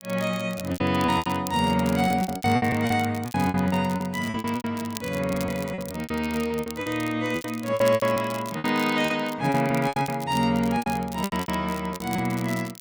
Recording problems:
crackle; vinyl, SNR 16 dB
lost packets; 17% of the sound replaced, filled with repeated pitch periods

